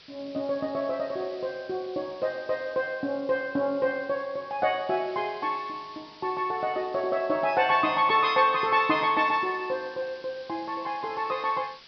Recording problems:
treble missing; nothing above 5.5 kHz
hiss; slope +1 dB per octave, SNR 23 dB

